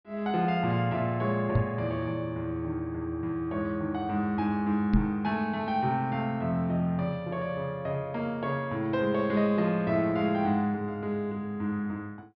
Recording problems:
low-pass filter; nothing above 5.5 kHz
microphone bump; at 1.5 s and at 5 s; peak +7 dB vs average level

